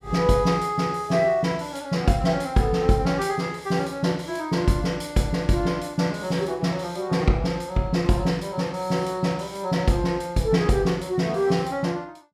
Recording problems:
none

